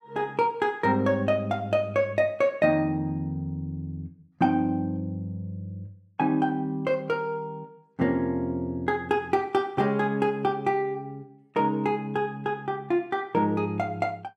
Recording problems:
none

